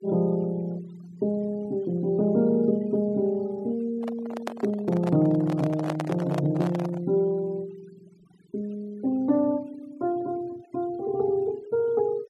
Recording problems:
denoising artefacts; signal-to-artefact ratio 26 dB
handling noise; from 4 to 7 s; peak -1 dB vs average level

